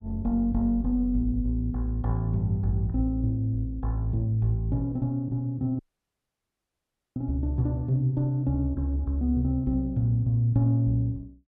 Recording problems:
dropout; at 6 s for 1.5 s

